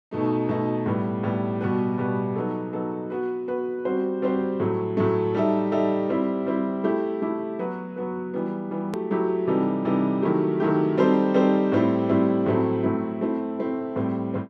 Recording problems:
click at an edit; at 9 s

